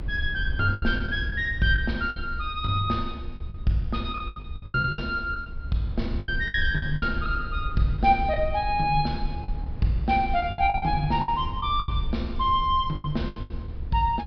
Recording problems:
treble missing; nothing above 5.5 kHz
rumble; below 72 Hz, SNR 8 dB
packet loss; 11% of the sound replaced, filled with the last packet

